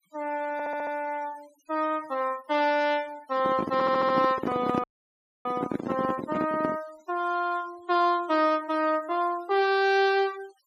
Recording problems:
denoising artefacts; signal-to-artefact ratio 21 dB
stutter; at 0.5 s and at 3.5 s
microphone handling noise; from 3.5 to 7 s; peak +1 dB vs average level
dropout; at 5 s for 0.5 s

